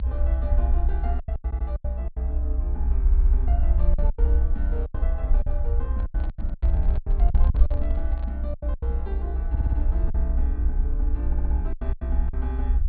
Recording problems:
treble cut off; nothing above 4.5 kHz
rumble; below 62 Hz, SNR -13 dB
lost packets; 12% of the sound replaced, filled with silence
stutter; 4 times, first at 1.5 s
handling noise; from 6 to 8.5 s; peak -3 dB vs average level

